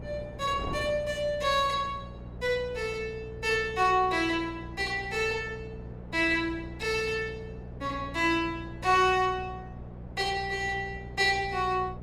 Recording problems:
hum; 60 Hz, harmonics up to 480 Hz, SNR 15 dB
wind on the microphone; below 520 Hz, SNR 18 dB

